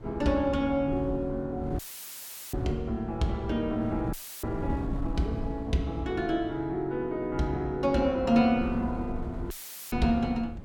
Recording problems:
wind noise; below 160 Hz, SNR 11 dB
dropout; at 2 s for 0.5 s, at 4 s and at 9.5 s; filled with static

